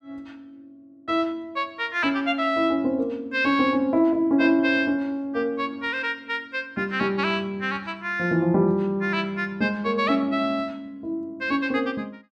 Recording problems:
none

